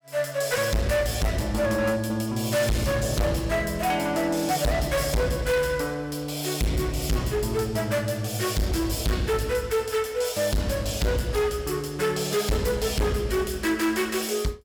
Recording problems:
distorted audio; hard clipping, signal-to-distortion ratio 6 dB

